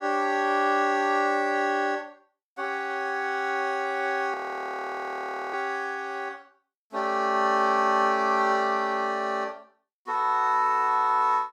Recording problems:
audio freezing; at 4.5 s for 1 s

